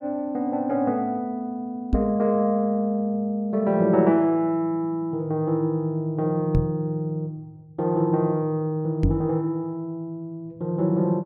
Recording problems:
microphone thump; at 2 s, at 6.5 s and at 9 s; peak +6 dB vs average level

